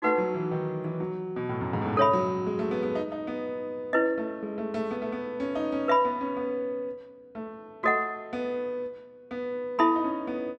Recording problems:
none

